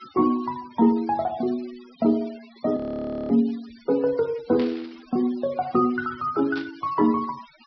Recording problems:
low-pass filter; nothing above 5.5 kHz
noise reduction artefacts; signal-to-artefact ratio 23 dB
frozen audio; at 3 s for 0.5 s
static burst; at 3.5 s, at 4.5 s and at 6.5 s; peak -9 dB vs average level

